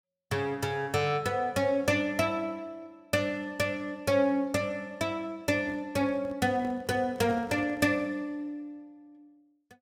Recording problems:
microphone handling noise; from 5.5 to 8 s; peak -9 dB vs average level

